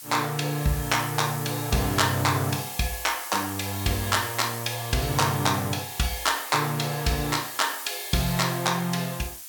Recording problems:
hiss; slope +4 dB per octave, SNR 9 dB

